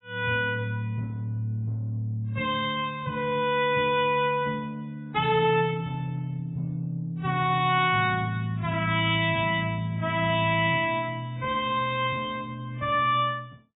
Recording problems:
lossy codec; AAC, then MP3, log-spectral distance 2 dB, nothing above 3.5 kHz

